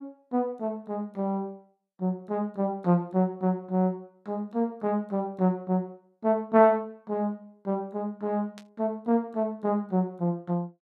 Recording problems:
static burst; at 8.5 s; peak -15 dB vs average level

